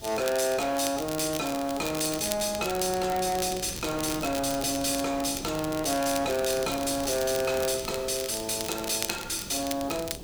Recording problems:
distorted audio; soft clipping, signal-to-distortion ratio 10 dB
background hiss; slope +2 dB per octave, SNR 18 dB
wind noise; below 410 Hz, SNR 16 dB
crackle; vinyl, SNR 10 dB

